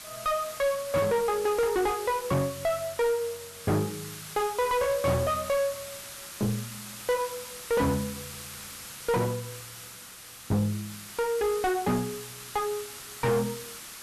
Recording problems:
distortion; soft clipping, signal-to-distortion ratio 6 dB
hiss; SNR 11 dB

